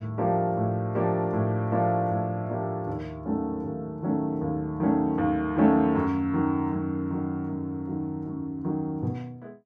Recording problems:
none

